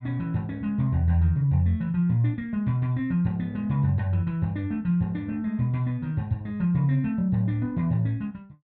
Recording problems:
none

